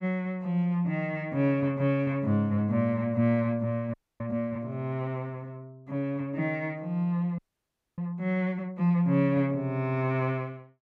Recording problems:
frozen audio; at 4 s and at 7.5 s for 0.5 s

